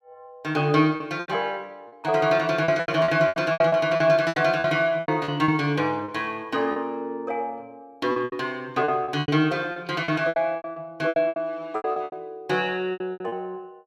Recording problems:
lost packets; 15% of the sound replaced, filled with repeated pitch periods

